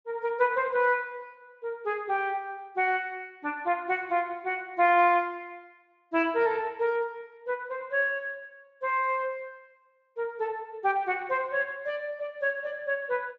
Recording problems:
lossy codec; Speex, log-spectral distance 2 dB

